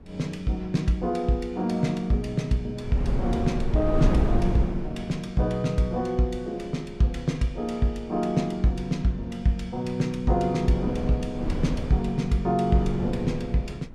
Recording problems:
wind on the microphone; below 210 Hz, SNR 5 dB

